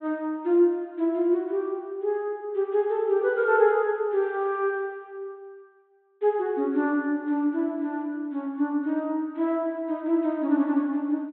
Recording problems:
low-pass filter; nothing above 4 kHz

